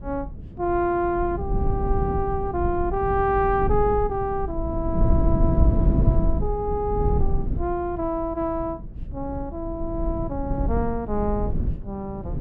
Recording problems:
wind on the microphone; below 130 Hz, SNR 1 dB

